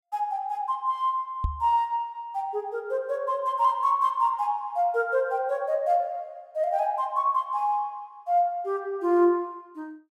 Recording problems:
microphone bump; at 1.5 s; peak +1 dB vs average level

